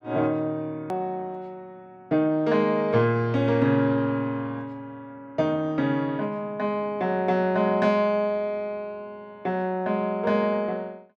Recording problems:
hard cut with a click; at 1 s

